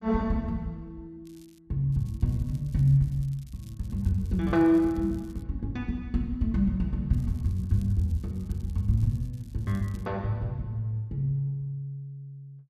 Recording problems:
crackle; at 1.5 s, from 2 to 5.5 s and from 7 to 10 s; loose cable, SNR 30 dB

